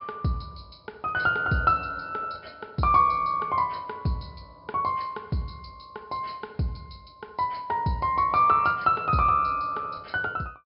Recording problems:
treble missing; nothing above 5.5 kHz

